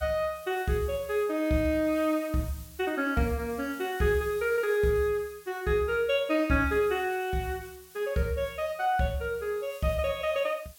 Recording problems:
hiss; slope +2 dB per octave, SNR 21 dB

